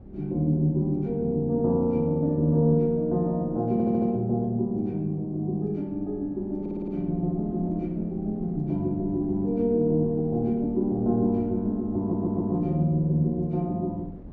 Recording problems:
wind noise; below 260 Hz, SNR 20 dB
stutter; at 3.5 s, at 6.5 s and at 12 s

